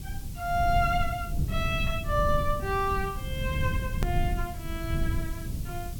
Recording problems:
hiss; SNR 17 dB
low-frequency rumble; below 120 Hz, SNR 2 dB
hard cut with a click; at 4 s

